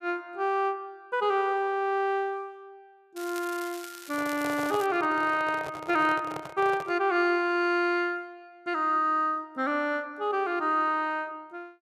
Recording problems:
crackling; from 3 to 5 s; loose cable, SNR 16 dB
microphone handling noise; from 4 to 7 s; peak -4 dB vs average level

